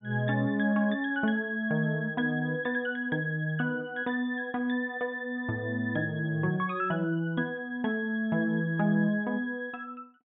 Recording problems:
treble missing; nothing above 4 kHz

